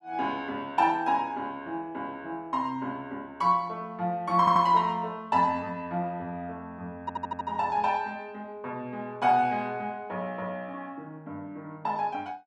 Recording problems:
stutter; at 4.5 s and at 7 s

